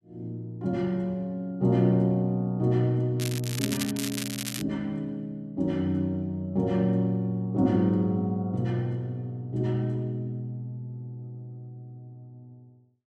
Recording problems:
crackling; from 3 to 4.5 s; loose cable, SNR 6 dB

